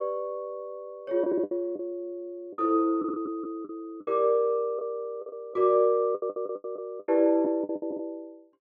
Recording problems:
lost packets; 11% of the sound replaced, filled with the last packet

